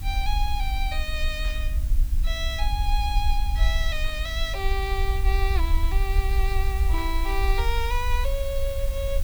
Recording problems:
hum; 50 Hz, harmonics up to 300 Hz, SNR 19 dB
background hiss; slope 0 dB per octave, SNR 13 dB
low-frequency rumble; below 56 Hz, SNR -3 dB
burst of static; at 1.5 s, at 4 s and at 7 s; peak -12 dB vs average level

